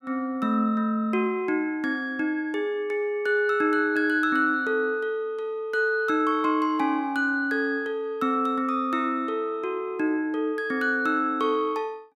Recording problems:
none

